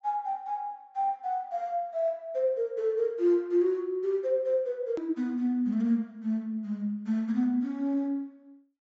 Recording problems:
low-pass filter; nothing above 8 kHz
edit click; at 5 s

